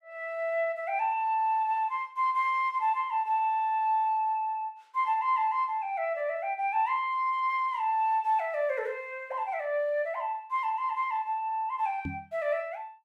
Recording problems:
microphone thump; at 12 s; peak -3 dB vs average level

